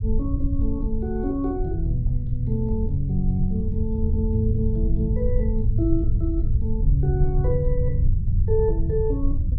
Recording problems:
low-frequency rumble; below 80 Hz, SNR 0 dB

